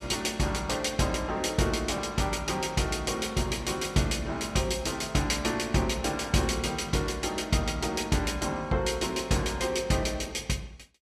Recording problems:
none

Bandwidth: 14.5 kHz